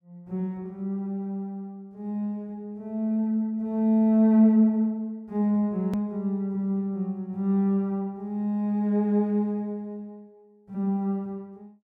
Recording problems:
hard cut with a click; at 6 s

